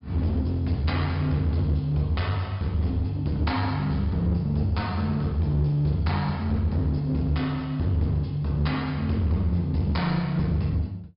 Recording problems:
treble cut off; nothing above 5.5 kHz
distorted audio; hard clipping, uneven, signal-to-distortion ratio 10 dB

